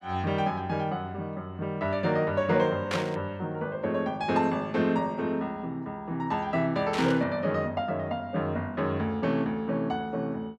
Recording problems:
burst of static; at 3 s and at 7 s; peak +1 dB vs average level

